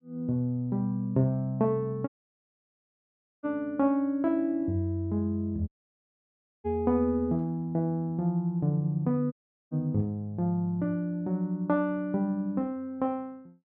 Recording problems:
dropout; at 2 s for 1.5 s, at 5.5 s for 1 s and at 9.5 s

